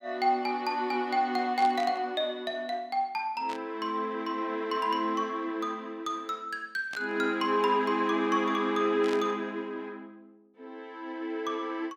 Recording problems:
burst of static; 4 times, first at 1.5 s; peak -6 dB vs average level

